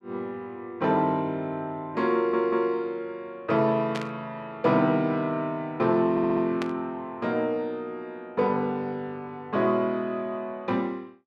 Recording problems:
audio stuttering; at 2 s and at 6 s
burst of static; at 4 s and at 6.5 s; peak -4 dB vs average level

